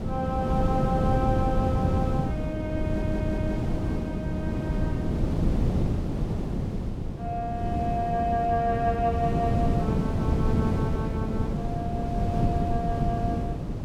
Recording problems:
wind on the microphone; below 250 Hz, SNR -3 dB
stutter; at 3 s

